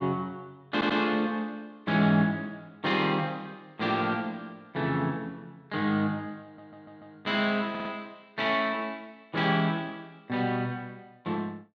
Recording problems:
audio stuttering; at 0.5 s, at 6.5 s and at 7.5 s

